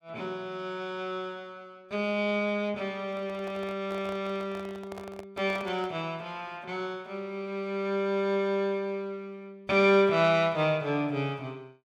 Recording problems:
microphone handling noise; from 3 to 6 s; peak -9 dB vs average level

